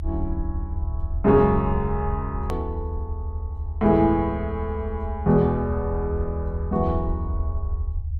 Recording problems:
rumble; below 78 Hz, SNR 6 dB
hard cut with a click; at 2.5 s

